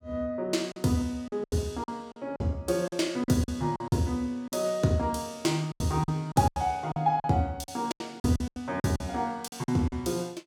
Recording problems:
packet loss; 13% of the sound replaced, filled with silence

